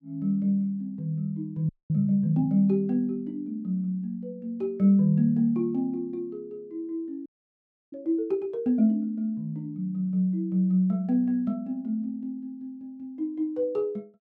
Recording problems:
audio freezing; at 1.5 s and at 7.5 s for 0.5 s

